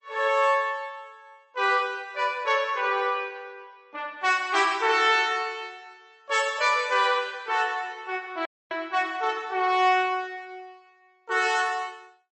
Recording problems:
lossy compression; MP3, log-spectral distance 2 dB, nothing above 8.2 kHz
audio cutting out; at 8.5 s

